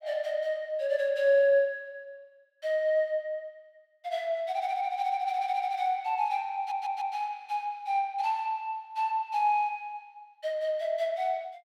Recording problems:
audio stuttering; at 6.5 s

